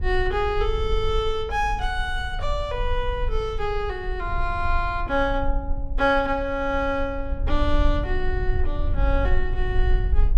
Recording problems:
rumble; below 50 Hz, strongest tone 20 Hz, SNR 3 dB

